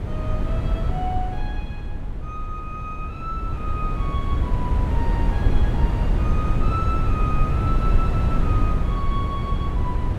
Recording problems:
wind on the microphone; below 110 Hz, SNR -8 dB

